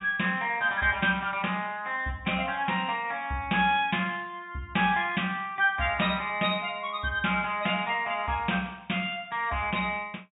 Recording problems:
low-pass filter; nothing above 4 kHz

